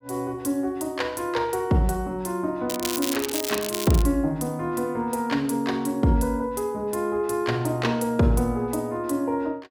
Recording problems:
crackling; from 2.5 to 4 s; loose cable, SNR 5 dB

